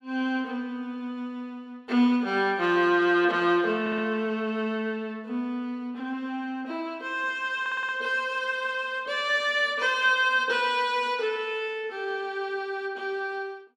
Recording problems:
audio stuttering; at 4 s and at 7.5 s

